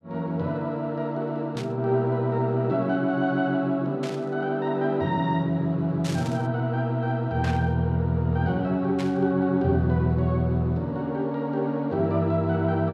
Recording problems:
burst of static; 5 times, first at 1.5 s; peak -8 dB vs average level

